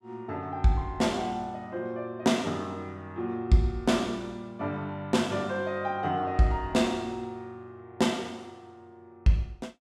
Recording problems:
none

